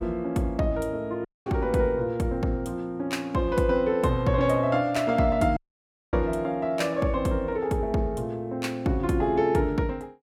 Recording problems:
audio cutting out; at 1.5 s and at 5.5 s for 0.5 s

